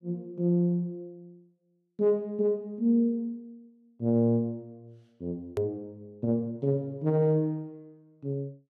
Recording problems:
click at an edit; at 5.5 s

